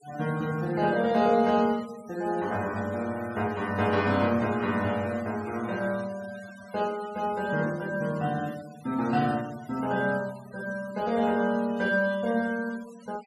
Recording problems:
noise reduction artefacts; signal-to-artefact ratio 20 dB

